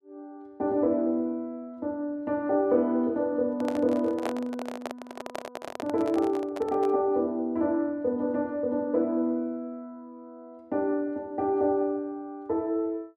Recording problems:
handling noise; from 3.5 to 7 s; peak +1 dB vs average level

